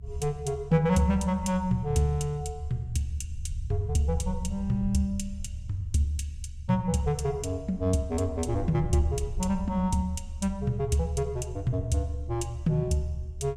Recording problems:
rumble; below 76 Hz, SNR 9 dB

